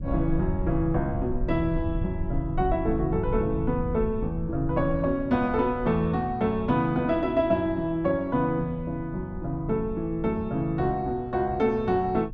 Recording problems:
rumble; below 96 Hz, SNR 10 dB

